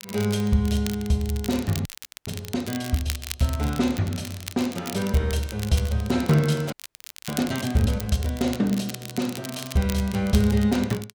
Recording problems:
crackling; vinyl, SNR 13 dB
frozen audio; at 2 s and at 6.5 s for 0.5 s

